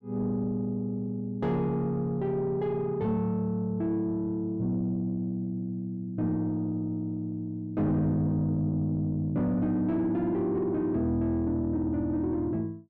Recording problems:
distortion; soft clipping, signal-to-distortion ratio 10 dB

